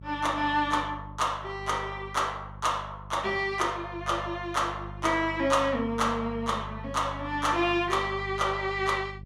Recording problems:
hum; 50 Hz, harmonics up to 400 Hz, SNR 14 dB

